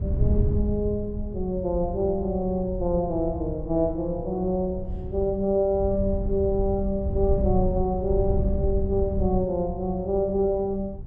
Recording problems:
wind on the microphone; below 100 Hz, SNR 5 dB

